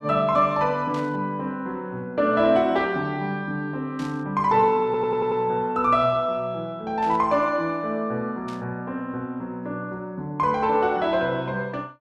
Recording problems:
static burst; 4 times, first at 1 s; peak -14 dB vs average level
audio stuttering; at 5 s

